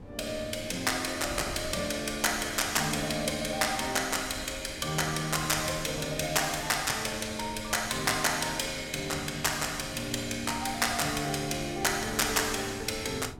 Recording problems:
wind noise; below 280 Hz, SNR 17 dB

